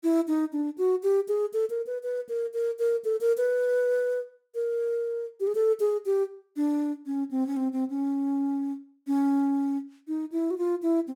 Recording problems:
none

